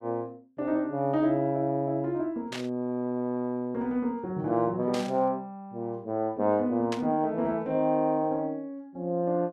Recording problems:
burst of static; at 2.5 s, at 5 s and at 7 s; peak -4 dB vs average level

